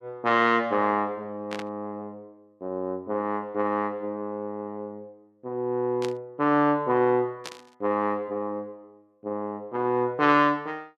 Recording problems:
static burst; at 1.5 s, at 6 s and at 7.5 s; peak -5 dB vs average level

